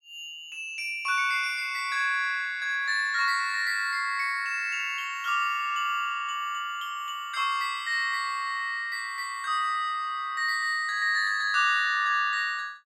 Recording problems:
none

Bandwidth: 17.5 kHz